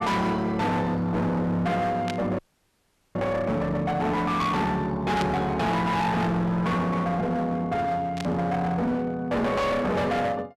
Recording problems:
distortion; hard clipping, uneven, signal-to-distortion ratio 6 dB
burst of static; at 2 s, at 5 s and at 8 s; peak -4 dB vs average level
audio cutting out; at 2.5 s for 1 s

